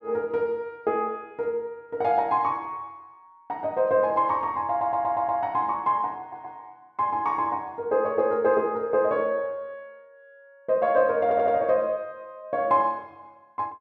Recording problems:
audio stuttering; at 4.5 s, at 6 s and at 11 s

